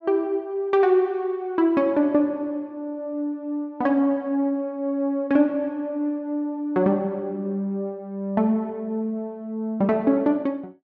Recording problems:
none

